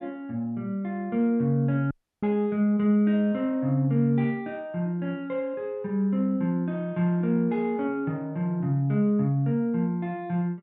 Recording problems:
audio cutting out; at 2 s

